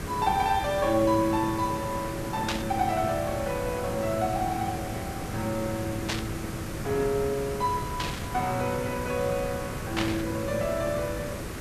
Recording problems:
background hiss; SNR 6 dB
burst of static; 4 times, first at 2.5 s; peak +3 dB vs average level

